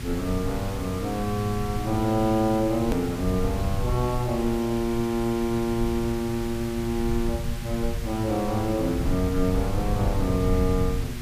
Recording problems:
hum; 60 Hz, harmonics up to 720 Hz, SNR 12 dB
background hiss; SNR 14 dB
low-frequency rumble; below 100 Hz, SNR 7 dB
click at an edit; at 3 s

